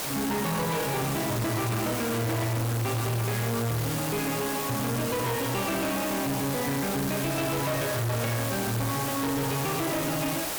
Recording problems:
distorted audio; hard clipping, uneven, signal-to-distortion ratio 6 dB
hiss; slope -2 dB per octave, SNR 3 dB

